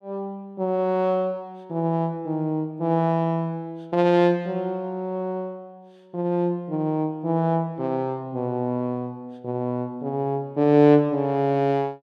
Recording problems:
none

